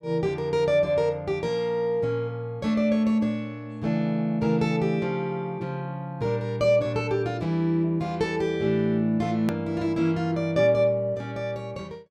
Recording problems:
click at an edit; at 9.5 s

